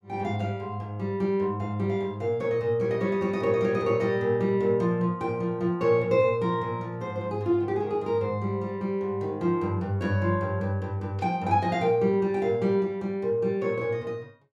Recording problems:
none

